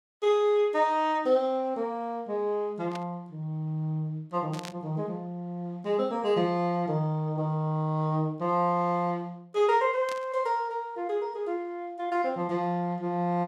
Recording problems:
static burst; at 3 s, at 4.5 s and at 10 s; peak -8 dB vs average level

